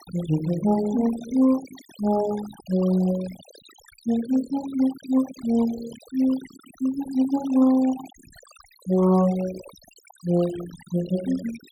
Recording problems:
noise reduction artefacts; signal-to-artefact ratio 18 dB

